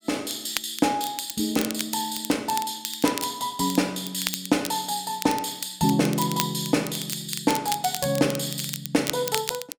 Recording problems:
crackle; vinyl, SNR 8 dB

